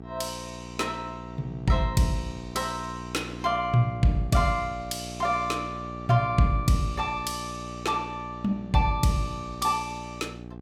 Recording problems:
hum; 60 Hz, harmonics up to 1.2 kHz, SNR 12 dB

